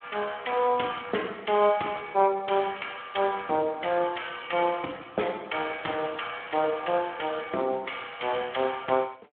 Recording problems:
telephone audio; 280 Hz to 3.4 kHz, Speex

